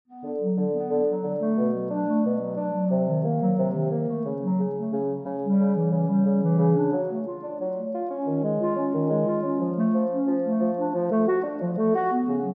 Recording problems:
none

